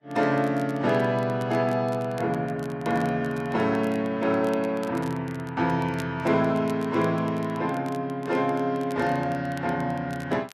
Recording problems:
codec artefacts; Vorbis, log-spectral distance 2 dB
crackling; vinyl, SNR 24 dB

